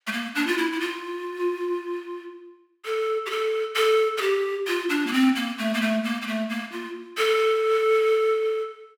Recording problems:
none

